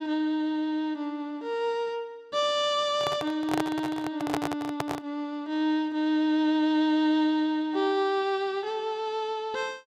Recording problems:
microphone handling noise; from 3 to 5 s; peak +2 dB vs average level

